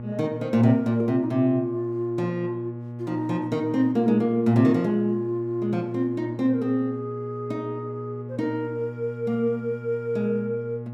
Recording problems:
hum; 60 Hz, harmonics up to 840 Hz, SNR 11 dB

